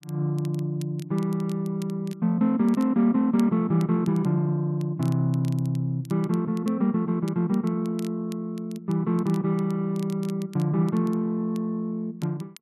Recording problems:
crackling; vinyl, SNR 26 dB

